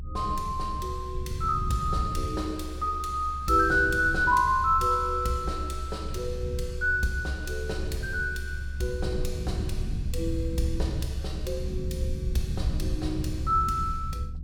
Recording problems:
rumble; below 100 Hz, SNR 6 dB

